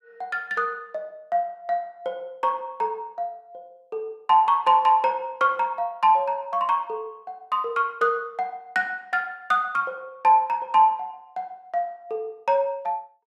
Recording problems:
none

